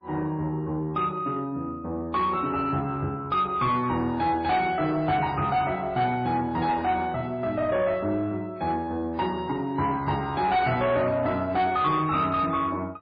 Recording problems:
codec artefacts; MP3, log-spectral distance 2 dB, nothing above 4.2 kHz
distorted audio; soft clipping, signal-to-distortion ratio 11 dB

